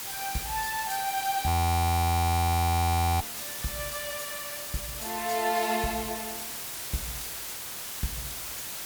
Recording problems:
background hiss; slope 0 dB per octave, SNR 5 dB
audio freezing; at 1.5 s for 1.5 s

